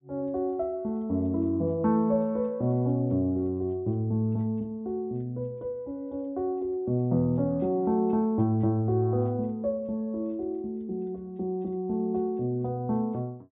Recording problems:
treble cut off; nothing above 4 kHz

